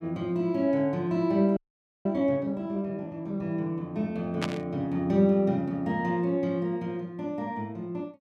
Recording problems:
audio freezing; at 1.5 s
static burst; at 4.5 s; peak +1 dB vs average level

